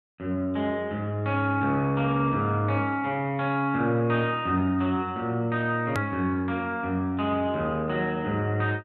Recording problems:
click at an edit; at 6 s

